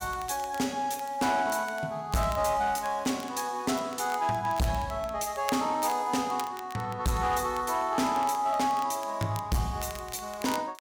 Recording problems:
distortion; hard clipping, signal-to-distortion ratio 12 dB
crackling; vinyl, SNR 18 dB

